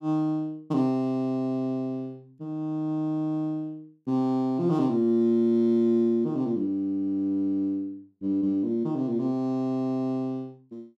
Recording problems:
none

